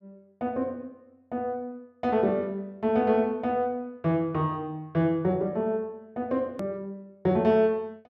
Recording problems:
click at an edit; at 6.5 s

